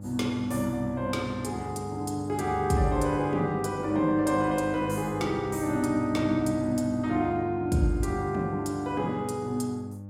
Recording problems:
hum; 50 Hz, harmonics up to 800 Hz, SNR 13 dB

